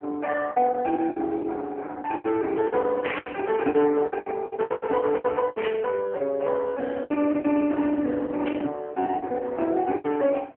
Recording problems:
phone line; 240 Hz to 3.1 kHz, AMR-NB
packet loss; 15% of the sound replaced, filled with the last packet
burst of static; at 3 s, at 5.5 s and at 8.5 s; peak -1 dB vs average level

